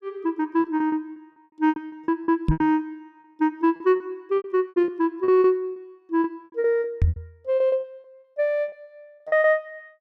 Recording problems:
lost packets; 16% of the sound replaced, filled with repeated pitch periods
knock on the microphone; at 2.5 s and at 7 s; peak +6 dB vs average level

